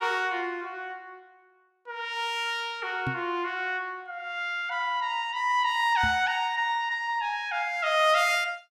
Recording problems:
microphone thump; at 3 s and at 6 s; peak -2 dB vs average level

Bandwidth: 14.5 kHz